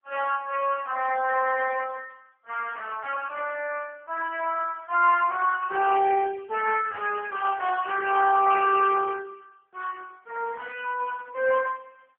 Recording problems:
telephone audio; 340 Hz to 2.7 kHz, AMR-NB

